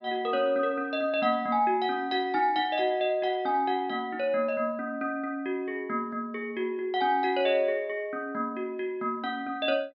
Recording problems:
treble cut off; nothing above 5.5 kHz

